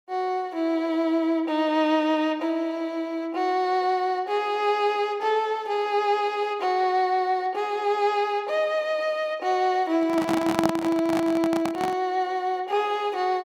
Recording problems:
handling noise; from 10 to 12 s; peak +3 dB vs average level

